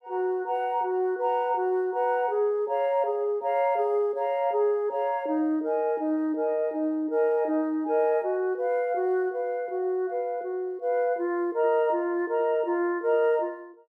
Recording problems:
none

